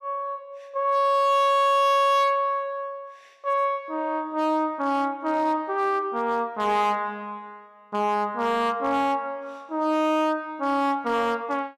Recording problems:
distorted audio; hard clipping, uneven, signal-to-distortion ratio 12 dB

